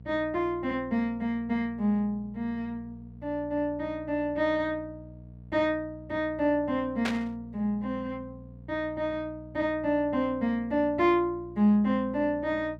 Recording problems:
hum; 60 Hz, harmonics up to 480 Hz, SNR 18 dB
burst of static; at 7 s; peak +1 dB vs average level

